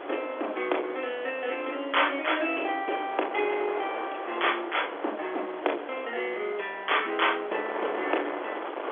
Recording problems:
phone line; 280 Hz to 3.5 kHz, G.711
distorted audio; hard clipping, signal-to-distortion ratio 12 dB
background hiss; SNR 21 dB
wind on the microphone; below 1.2 kHz, SNR 9 dB

